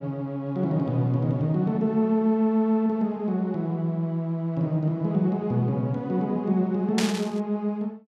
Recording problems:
static burst; at 7 s; peak +1 dB vs average level

